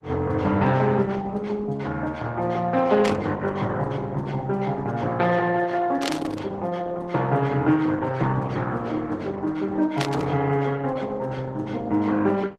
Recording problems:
lossy codec; Opus, then Opus, log-spectral distance 3 dB
static burst; at 3 s, at 6 s and at 10 s; peak +2 dB vs average level

